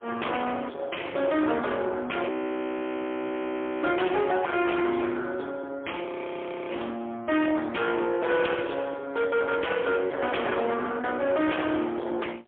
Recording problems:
phone line; 260 Hz to 3.4 kHz, AMR-NB, then MP3
distortion; soft clipping, signal-to-distortion ratio 7 dB
audio freezing; at 2.5 s for 1.5 s and at 6 s for 0.5 s

